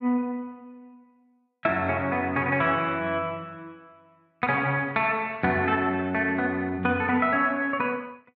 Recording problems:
none

